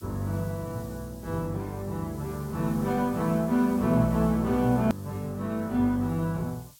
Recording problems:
hiss; slope +7 dB per octave, SNR 23 dB
click at an edit; at 5 s

